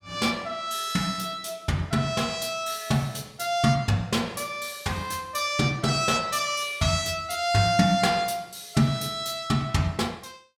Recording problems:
none

